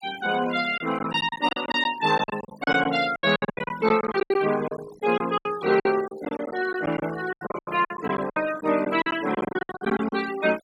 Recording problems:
denoising artefacts; signal-to-artefact ratio 15 dB
lost packets; 18% of the sound replaced, filled with silence

